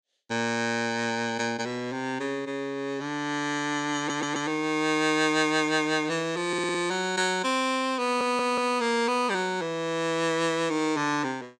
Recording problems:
stutter; at 4 s, at 6.5 s and at 8 s

